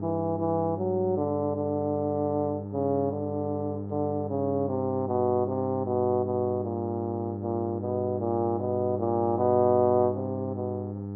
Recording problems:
hum; 50 Hz, harmonics up to 900 Hz, SNR 8 dB

